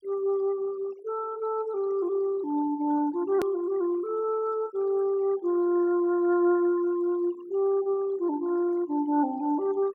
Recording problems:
noise reduction artefacts; signal-to-artefact ratio 24 dB
edit click; at 3.5 s

